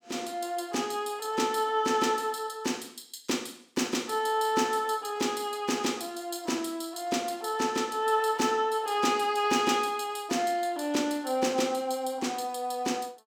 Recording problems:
none

